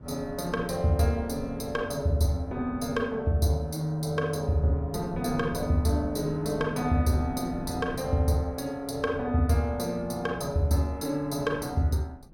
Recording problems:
wind on the microphone; below 240 Hz, SNR 14 dB

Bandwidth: 16.5 kHz